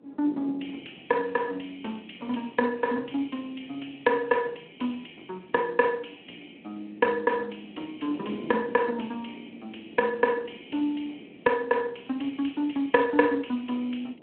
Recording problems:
telephone audio; 240 Hz to 3.3 kHz, Speex
wind on the microphone; below 400 Hz, SNR 18 dB

